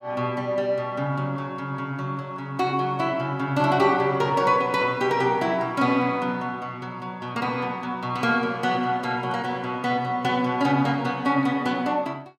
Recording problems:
none

